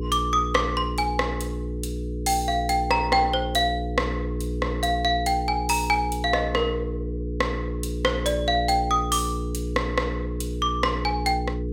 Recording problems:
hum; 60 Hz, harmonics up to 480 Hz, SNR 5 dB

